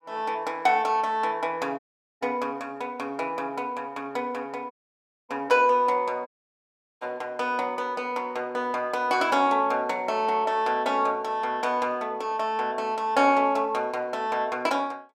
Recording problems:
audio cutting out; at 2 s, at 4.5 s for 0.5 s and at 6.5 s for 0.5 s

